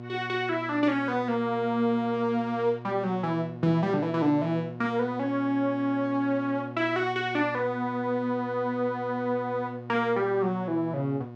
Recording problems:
hum; 60 Hz, harmonics up to 1.4 kHz, SNR 13 dB

